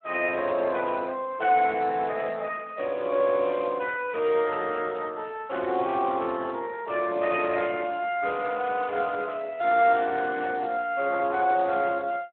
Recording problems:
phone line; 280 Hz to 2.9 kHz, Speex

